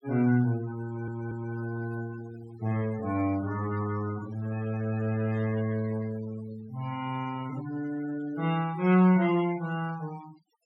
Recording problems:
denoising artefacts; signal-to-artefact ratio 18 dB
stutter; at 1 s

